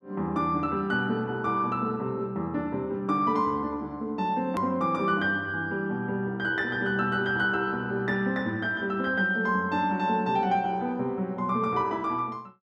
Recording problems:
edit click; at 4.5 s

